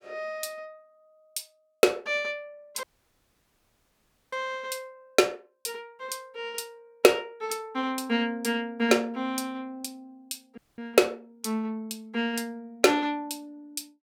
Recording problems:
audio cutting out; at 3 s for 1.5 s and at 11 s

